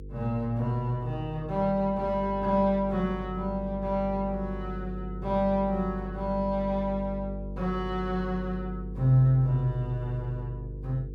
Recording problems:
hum; 50 Hz, harmonics up to 500 Hz, SNR 11 dB

